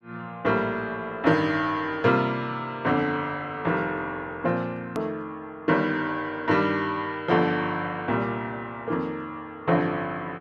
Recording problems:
hard cut with a click; at 5 s

